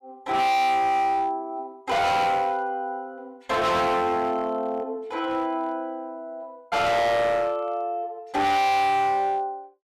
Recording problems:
distorted audio; hard clipping, signal-to-distortion ratio 6 dB

